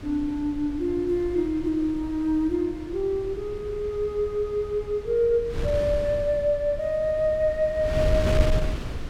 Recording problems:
wind on the microphone; below 160 Hz, SNR 8 dB

